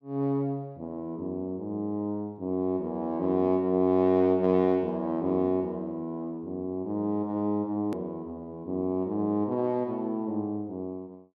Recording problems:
edit click; at 8 s

